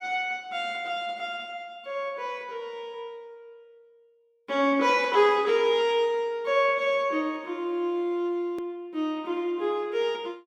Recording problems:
hard cut with a click; at 8.5 s

